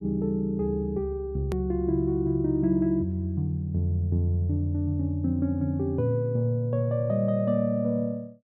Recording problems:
edit click; at 1.5 s

